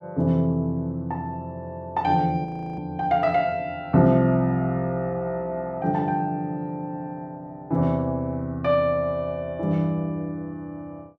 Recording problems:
frozen audio; at 2.5 s

